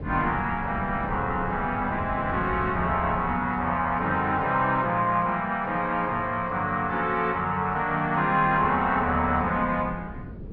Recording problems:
treble cut off; nothing above 5.5 kHz
wind on the microphone; below 250 Hz, SNR 14 dB

